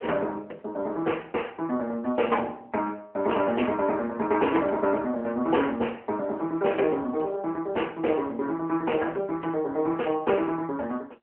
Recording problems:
phone line; 260 Hz to 3.1 kHz, AMR-NB

